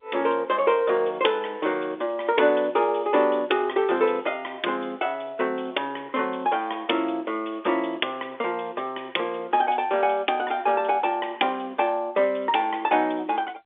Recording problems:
telephone audio; 280 Hz to 3.6 kHz, G.711

